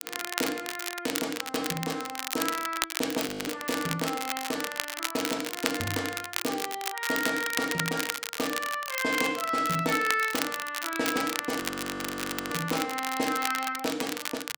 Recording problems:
crackling; vinyl, SNR 3 dB
audio freezing; at 3.5 s and at 12 s for 1 s

